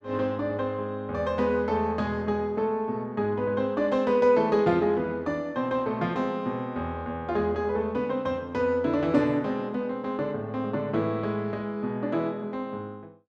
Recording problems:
none

